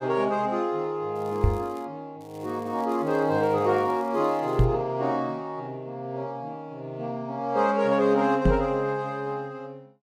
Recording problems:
crackling; at 1 s and from 2 to 4.5 s; loose cable, SNR 29 dB
microphone thump; at 1.5 s, at 4.5 s and at 8.5 s; peak +9 dB vs average level

